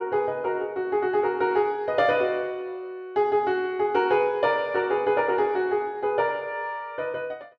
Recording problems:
none

